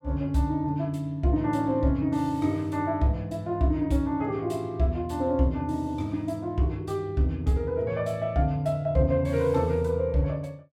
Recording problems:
none

